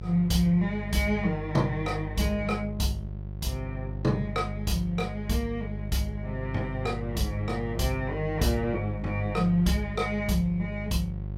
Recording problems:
hum; 50 Hz, harmonics up to 550 Hz, SNR 7 dB

